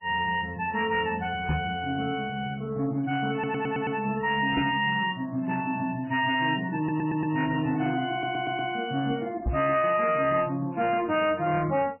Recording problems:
lossy compression; MP3, log-spectral distance 3 dB, nothing above 2.5 kHz
distortion; hard clipping, signal-to-distortion ratio 11 dB
knock on the microphone; at 1.5 s, at 4.5 s and at 9.5 s; peak +3 dB vs average level
audio stuttering; at 3.5 s, at 7 s and at 8 s

